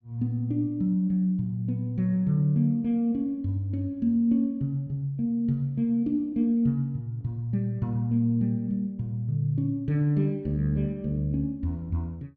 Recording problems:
none

